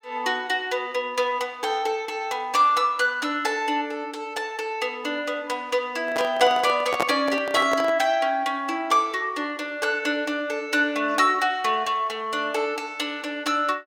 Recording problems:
microphone handling noise; from 6 to 8 s; peak +4 dB vs average level

